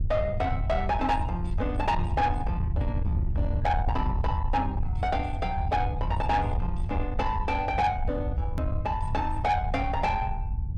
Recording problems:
distortion; soft clipping, signal-to-distortion ratio 11 dB
low-frequency rumble; below 98 Hz, SNR 2 dB
edit click; at 8.5 s

